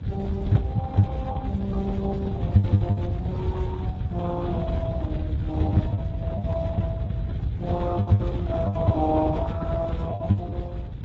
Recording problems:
lossy compression; Speex, then AAC, log-spectral distance 2 dB, nothing above 7.6 kHz
electrical hum; 60 Hz, harmonics up to 300 Hz, SNR 21 dB
low-frequency rumble; below 140 Hz, SNR -2 dB
wind noise; below 420 Hz, SNR 19 dB
lost packets; 9% of the sound replaced, filled with the last packet

